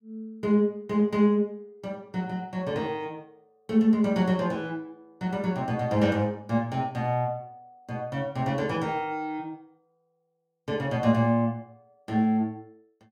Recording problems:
none

